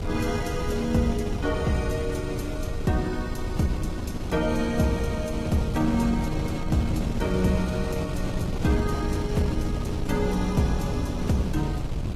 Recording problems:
lossy codec; AAC, log-spectral distance 2 dB, nothing above 15.1 kHz
wind noise; below 210 Hz, SNR 3 dB

